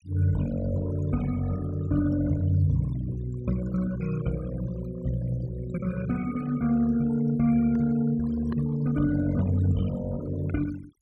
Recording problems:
denoising artefacts; signal-to-artefact ratio 18 dB

